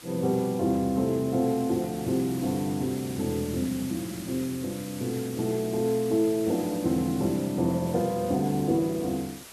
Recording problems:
hiss; slope -1 dB per octave, SNR 15 dB

